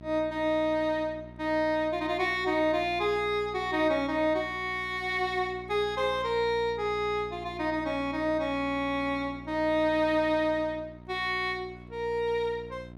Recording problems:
hum; 60 Hz, harmonics up to 1.3 kHz, SNR 18 dB

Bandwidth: 15.5 kHz